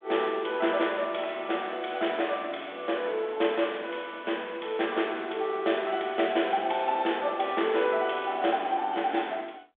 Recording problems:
phone line; 280 Hz to 3.6 kHz, G.726

